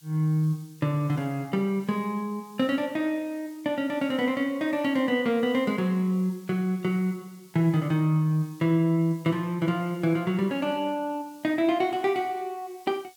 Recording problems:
background hiss; SNR 27 dB

